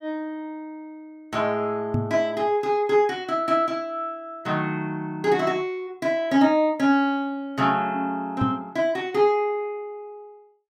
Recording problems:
microphone bump; at 2 s and at 8.5 s; peak +2 dB vs average level

